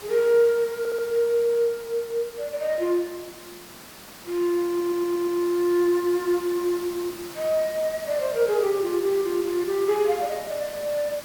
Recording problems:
hiss; slope -2 dB per octave, SNR 16 dB
audio stuttering; at 1 s and at 4.5 s

